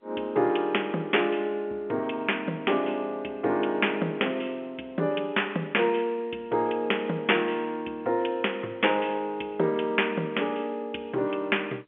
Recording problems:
telephone audio; 260 Hz to 3.4 kHz, G.711

